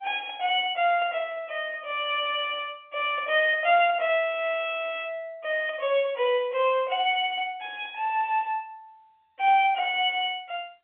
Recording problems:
telephone audio; 300 Hz to 3.4 kHz, G.711

